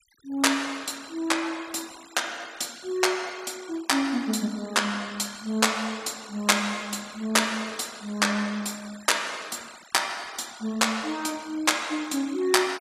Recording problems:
noise reduction artefacts; signal-to-artefact ratio 20 dB

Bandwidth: 15 kHz